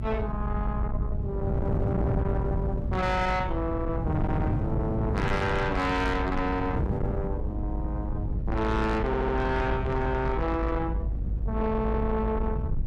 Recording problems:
distorted audio; soft clipping, signal-to-distortion ratio 10 dB
hum; 60 Hz, harmonics up to 1.3 kHz, SNR 24 dB
rumble; below 82 Hz, strongest tone 54 Hz, SNR 4 dB
wind noise; below 200 Hz, SNR 3 dB
stutter; at 9 s

